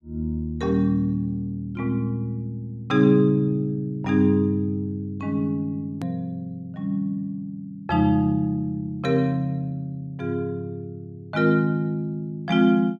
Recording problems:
hard cut with a click; at 6 s

